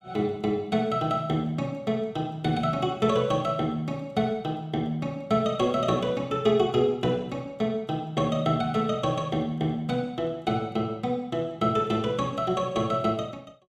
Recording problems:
none

